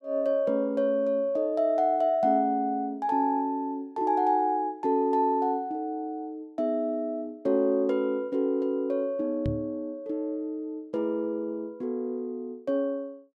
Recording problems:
knock on the microphone; at 9.5 s; peak 0 dB vs average level

